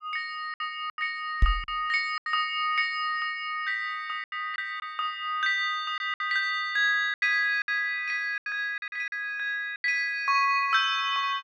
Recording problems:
packet loss; 8% of the sound replaced, filled with silence
knock on the microphone; at 1.5 s; peak +7 dB vs average level

